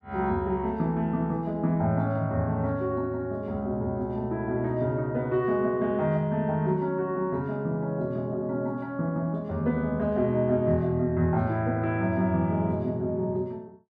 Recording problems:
none

